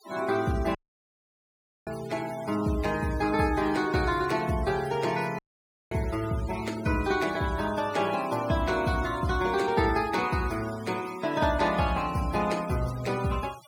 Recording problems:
denoising artefacts; signal-to-artefact ratio 16 dB
dropout; at 1 s for 1 s and at 5.5 s for 0.5 s

